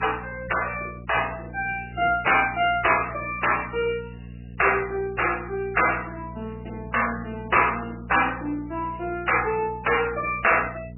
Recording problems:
lossy compression; MP3, log-spectral distance 7 dB, nothing above 2.7 kHz
hum; 60 Hz, harmonics up to 480 Hz, SNR 16 dB

